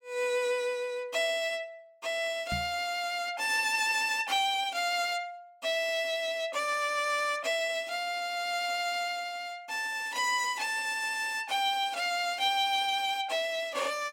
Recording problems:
microphone thump; at 2.5 s; peak -4 dB vs average level

